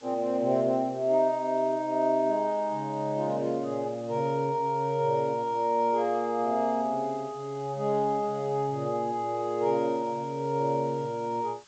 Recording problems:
treble missing; nothing above 8 kHz
background hiss; slope +1 dB per octave, SNR 27 dB

